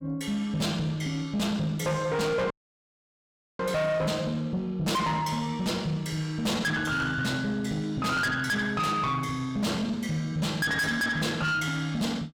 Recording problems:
distorted audio; soft clipping, signal-to-distortion ratio 6 dB
audio cutting out; at 2.5 s for 1 s

